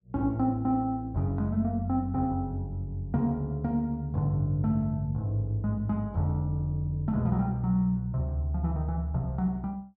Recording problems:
none

